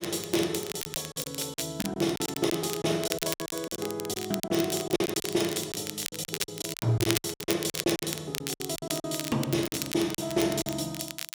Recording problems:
crackling; vinyl, SNR 6 dB
lost packets; 16% of the sound replaced, filled with silence

